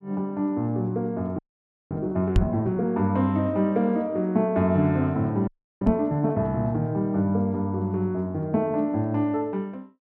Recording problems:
frozen audio; at 1.5 s for 0.5 s and at 5.5 s
microphone thump; at 2.5 s and at 6 s; peak +8 dB vs average level

